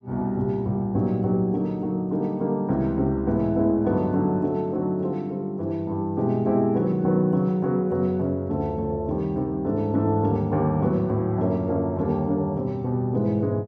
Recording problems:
none

